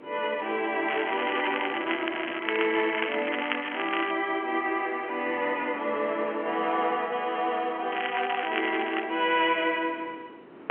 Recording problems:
telephone audio; 280 Hz to 3.2 kHz, G.711
wind on the microphone; below 810 Hz, SNR 20 dB
crackling; from 1 to 4 s and from 8 to 9 s; loose cable, SNR 6 dB

